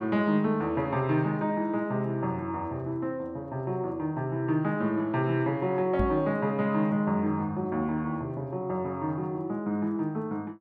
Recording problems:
microphone bump; at 6 s; peak +3 dB vs average level

